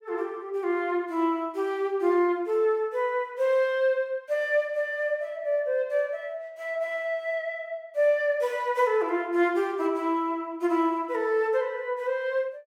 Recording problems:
none

